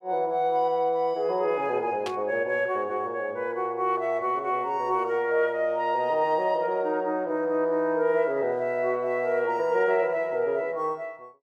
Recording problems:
burst of static; at 2 s; peak -5 dB vs average level

